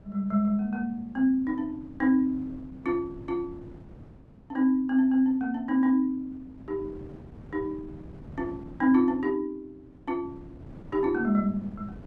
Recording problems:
wind on the microphone; below 280 Hz, SNR 20 dB

